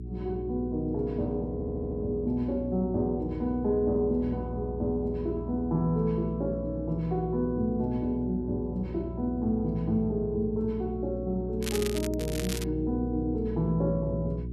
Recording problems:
hum; 60 Hz, harmonics up to 420 Hz, SNR 8 dB
audio stuttering; at 1.5 s
crackling; from 12 to 13 s; loose cable, SNR 8 dB

